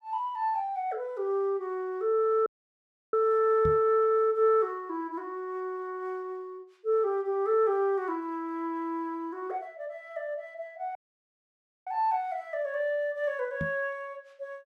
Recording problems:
audio cutting out; at 2.5 s for 0.5 s and at 11 s for 1 s
microphone thump; at 3.5 s and at 14 s; peak 0 dB vs average level

